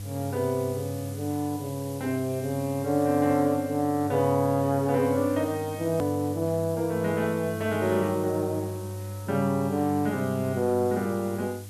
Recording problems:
electrical hum; 50 Hz, harmonics up to 500 Hz, SNR 12 dB
background hiss; slope +3 dB per octave, SNR 19 dB
click at an edit; at 6 s

